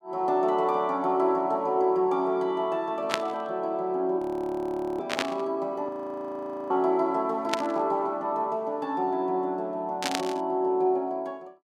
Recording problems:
burst of static; 4 times, first at 3 s; peak +5 dB vs average level
frozen audio; at 4 s for 1 s and at 6 s for 1 s

